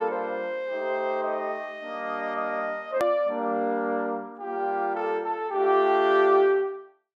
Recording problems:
click at an edit; at 3 s

